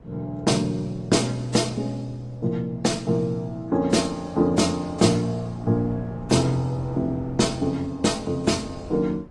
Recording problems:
codec artefacts; AAC, then AAC, log-spectral distance 2 dB, nothing above 10.1 kHz
wind on the microphone; below 340 Hz, SNR 20 dB

